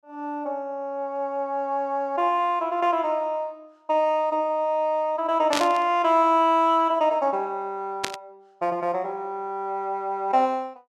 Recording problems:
static burst; at 5.5 s and at 8 s; peak +2 dB vs average level

